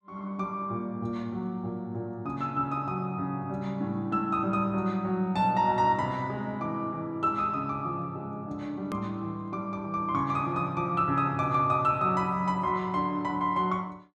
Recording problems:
edit click; at 9 s

